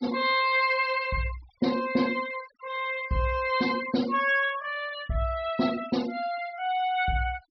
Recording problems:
low-pass filter; nothing above 5.5 kHz
noise reduction artefacts; signal-to-artefact ratio 17 dB

